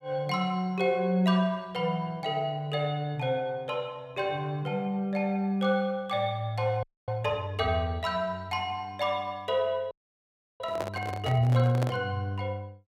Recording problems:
frozen audio; at 7 s and at 10 s for 0.5 s
handling noise; from 11 to 12 s; peak 0 dB vs average level

